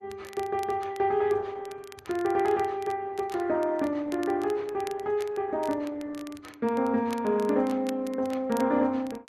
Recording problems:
codec artefacts; Opus, log-spectral distance 2 dB
crackle; vinyl, SNR 21 dB

